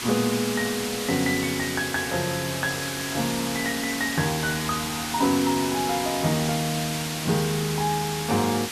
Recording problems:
background hiss; SNR 4 dB

